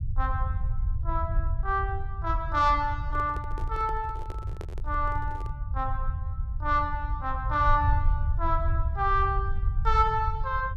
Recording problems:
low-frequency rumble; below 80 Hz, SNR 3 dB
handling noise; from 3 to 5.5 s; peak -8 dB vs average level

